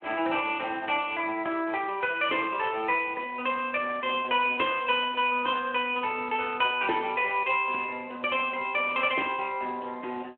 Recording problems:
telephone audio; 280 Hz to 3.4 kHz, Speex

